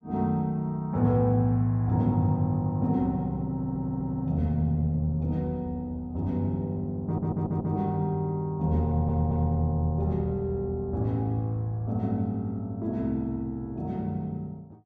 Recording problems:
stutter; at 3.5 s, at 7 s and at 9 s

